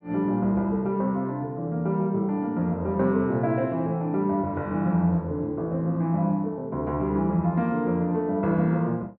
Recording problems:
none

